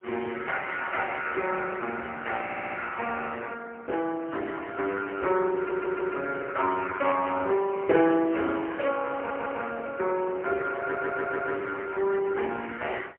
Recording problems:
phone line; 280 Hz to 3.1 kHz, AMR-NB, then MP3
stutter; 4 times, first at 2.5 s

